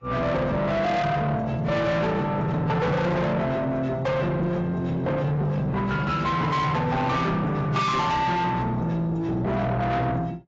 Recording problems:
lossy codec; AAC, log-spectral distance 2 dB, nothing above 7.3 kHz
distorted audio; soft clipping, signal-to-distortion ratio 7 dB

